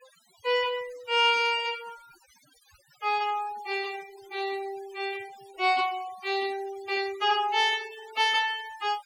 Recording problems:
noise reduction artefacts; signal-to-artefact ratio 19 dB

